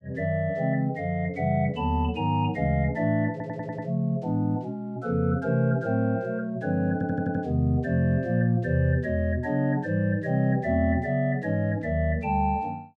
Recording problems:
stutter; at 3.5 s and at 7 s

